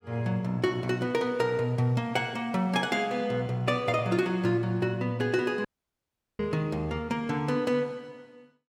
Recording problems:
dropout; at 5.5 s for 0.5 s

